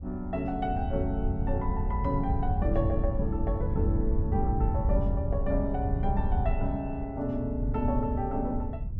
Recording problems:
wind on the microphone; below 94 Hz, SNR 0 dB

